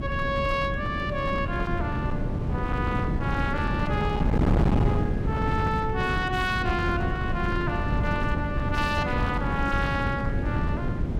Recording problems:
distorted audio; hard clipping, uneven, signal-to-distortion ratio 8 dB
wind on the microphone; below 240 Hz, SNR -1 dB

